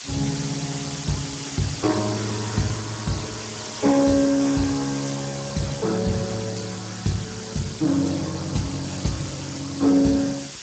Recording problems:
codec artefacts; Speex, log-spectral distance 15 dB, nothing above 7.8 kHz
background hiss; slope +3 dB per octave, SNR 9 dB
wind on the microphone; below 900 Hz, SNR 23 dB

